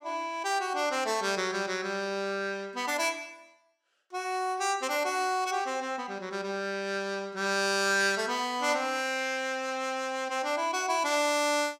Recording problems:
none

